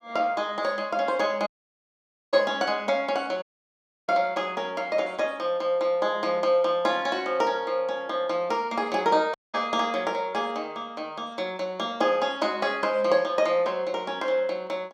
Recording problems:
dropout; at 1.5 s for 1 s, at 3.5 s for 0.5 s and at 9.5 s

